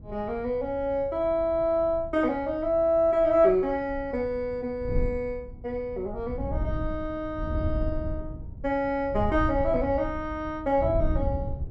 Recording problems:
wind noise; below 100 Hz, SNR 9 dB

